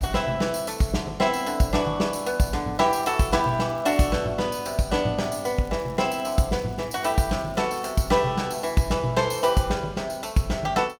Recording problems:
crackling; from 3 to 4 s, at 5 s and from 5.5 to 8 s; loose cable, SNR 29 dB

